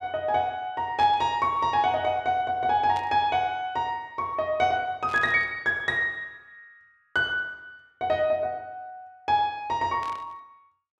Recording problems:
static burst; 4 times, first at 1 s; peak -12 dB vs average level

